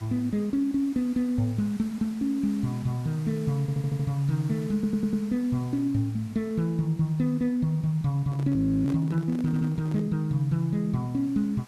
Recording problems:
background hiss; slope -2 dB per octave, SNR 24 dB
audio stuttering; at 3.5 s, at 4.5 s and at 9.5 s
handling noise; from 8.5 to 10 s; peak -9 dB vs average level
frozen audio; at 8.5 s

